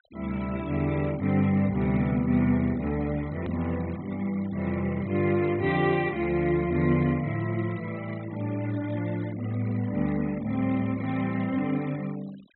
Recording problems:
treble cut off; nothing above 4 kHz
noise reduction artefacts; signal-to-artefact ratio 22 dB
click at an edit; at 3.5 s

